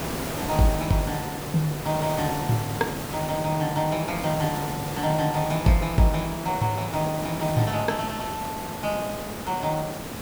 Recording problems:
background hiss; slope -5 dB per octave, SNR 6 dB

